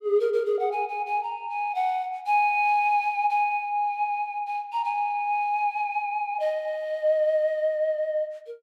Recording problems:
none

